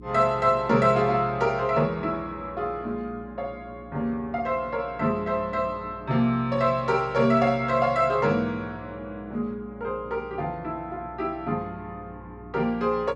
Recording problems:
hum; 60 Hz, harmonics up to 420 Hz, SNR 20 dB

